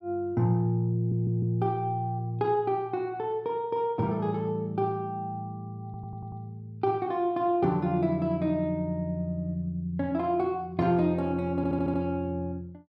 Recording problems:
stutter; at 1 s, at 6 s and at 12 s

